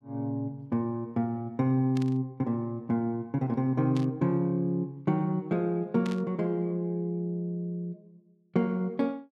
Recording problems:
static burst; at 2 s, at 4 s and at 6 s; peak -9 dB vs average level

